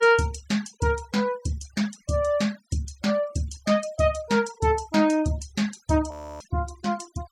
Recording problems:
denoising artefacts; signal-to-artefact ratio 20 dB
audio freezing; at 6 s

